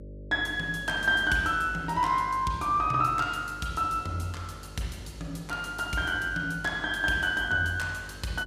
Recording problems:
hum; 50 Hz, harmonics up to 600 Hz, SNR 18 dB

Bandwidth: 15 kHz